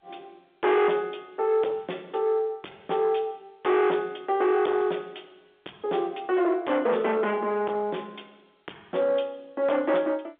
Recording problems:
telephone audio; 340 Hz to 3.6 kHz, G.711
distortion; soft clipping, signal-to-distortion ratio 8 dB

